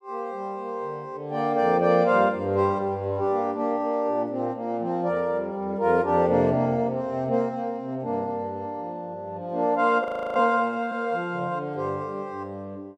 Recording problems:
audio freezing; at 10 s

